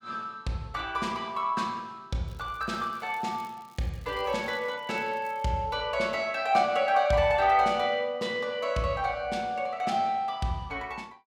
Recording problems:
crackling; from 2.5 to 5.5 s; loose cable, SNR 30 dB

